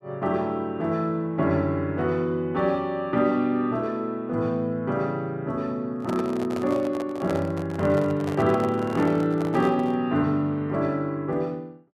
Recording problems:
microphone handling noise; from 6 to 10 s; peak -3 dB vs average level

